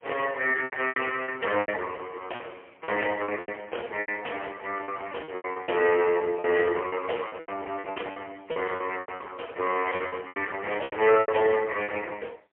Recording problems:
phone line; 320 Hz to 3.1 kHz, AMR-NB, then MP3
distortion; hard clipping, signal-to-distortion ratio 14 dB
lost packets; 14% of the sound replaced, filled with repeated pitch periods

